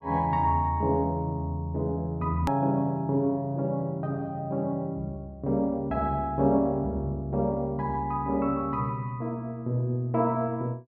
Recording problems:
hard cut with a click; at 2.5 s

